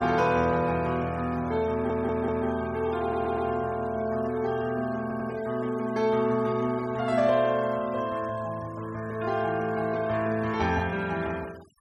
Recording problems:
denoising artefacts; signal-to-artefact ratio 22 dB
stutter; at 1.5 s, at 3 s and at 5 s

